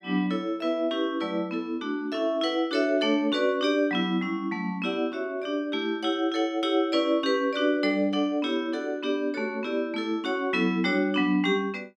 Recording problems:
none

